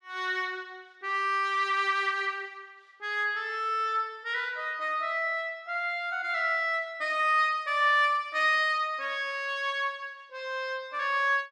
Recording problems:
none

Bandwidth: 12.5 kHz